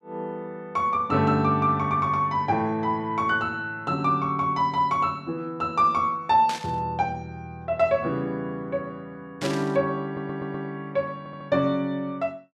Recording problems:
static burst; at 6.5 s and at 9.5 s; peak -3 dB vs average level
audio stuttering; at 10 s and at 11 s

